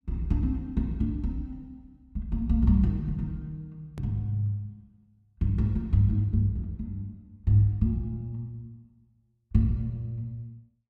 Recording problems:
click at an edit; at 4 s

